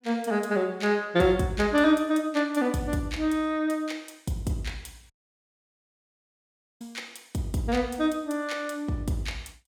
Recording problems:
dropout; at 5 s for 1.5 s

